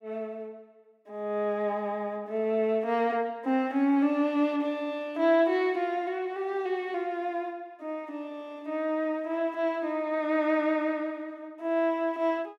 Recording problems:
none

